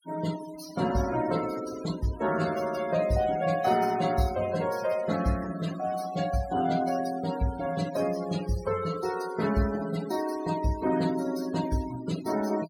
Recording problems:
denoising artefacts; signal-to-artefact ratio 13 dB

